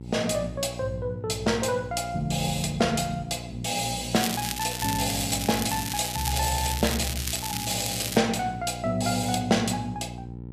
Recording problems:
hum; 60 Hz, harmonics up to 540 Hz, SNR 12 dB
crackle; from 4 to 8 s; loose cable, SNR 4 dB

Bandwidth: 14.5 kHz